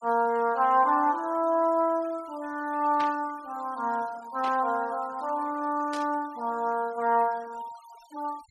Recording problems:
noise reduction artefacts; signal-to-artefact ratio 24 dB
static burst; at 3 s, at 4.5 s and at 6 s; peak -7 dB vs average level

